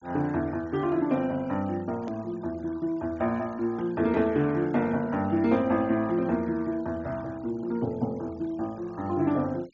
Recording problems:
low-pass filter; nothing above 7.4 kHz
denoising artefacts; signal-to-artefact ratio 25 dB
edit click; at 2 s

